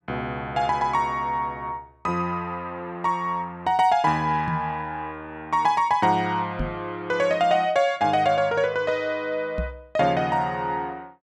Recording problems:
microphone thump; at 4.5 s, at 6.5 s and at 9.5 s; peak -1 dB vs average level

